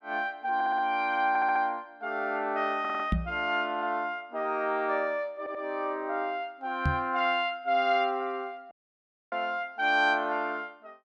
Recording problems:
audio stuttering; 4 times, first at 0.5 s
microphone thump; at 3 s and at 7 s; peak +4 dB vs average level
dropout; at 8.5 s for 0.5 s

